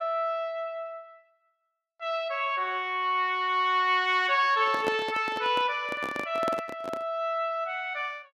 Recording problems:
handling noise; from 4.5 to 7 s; peak 0 dB vs average level

